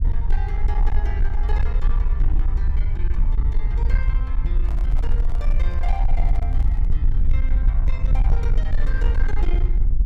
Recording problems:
distortion; hard clipping, uneven, signal-to-distortion ratio 10 dB
low-frequency rumble; below 50 Hz, SNR -14 dB
handling noise; from 4.5 to 7 s; peak -1 dB vs average level

